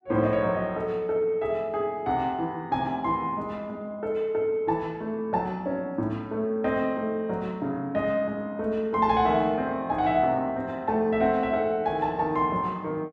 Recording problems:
none

